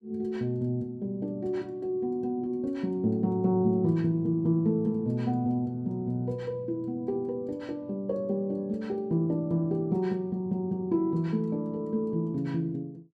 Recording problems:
none

